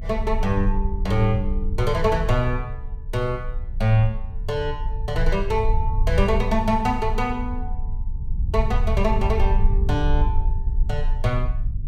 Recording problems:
rumble; below 60 Hz, strongest tone 28 Hz, SNR 2 dB

